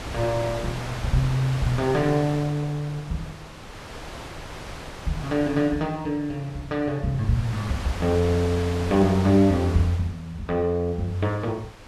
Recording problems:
wind on the microphone; below 2.1 kHz, SNR 12 dB

